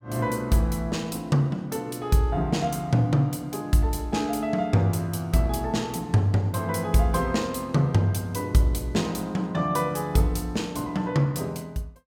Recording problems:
none

